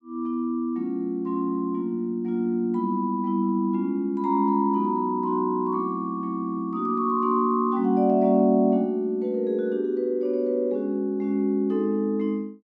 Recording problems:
none

